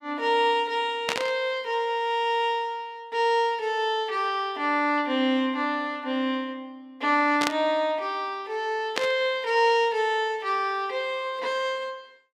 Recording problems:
burst of static; at 1 s, at 7.5 s and at 9 s; peak +3 dB vs average level

